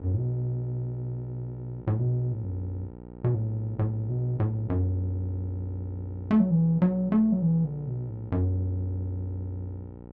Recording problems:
hum; 60 Hz, harmonics up to 1 kHz, SNR 16 dB

